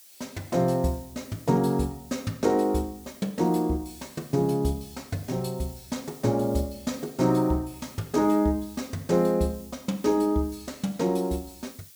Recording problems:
hiss; SNR 22 dB

